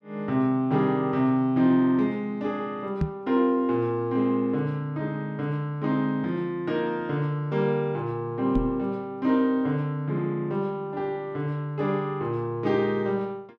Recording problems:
microphone bump; at 3 s and at 8.5 s; peak +4 dB vs average level

